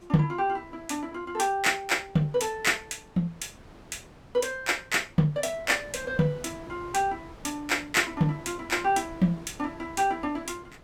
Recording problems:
wind noise; below 880 Hz, SNR 21 dB

